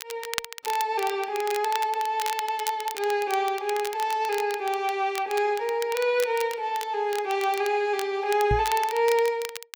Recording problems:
crackling; vinyl, SNR 12 dB
microphone bump; at 8.5 s; peak +2 dB vs average level

